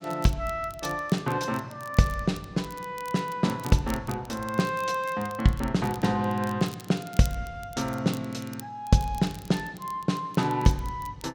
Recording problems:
crackle; vinyl, SNR 20 dB

